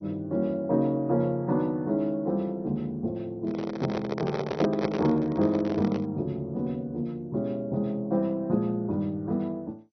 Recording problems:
codec artefacts; MP2, log-spectral distance 2 dB, nothing above 5 kHz
microphone handling noise; from 3.5 to 6 s; peak +4 dB vs average level

